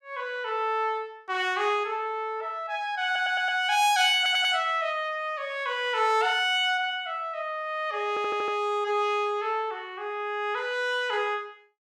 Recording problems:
stutter; at 3 s, at 4 s and at 8 s

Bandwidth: 14.5 kHz